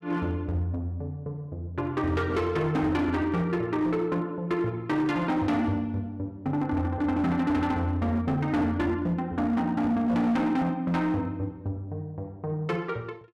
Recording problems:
distorted audio; hard clipping, signal-to-distortion ratio 11 dB

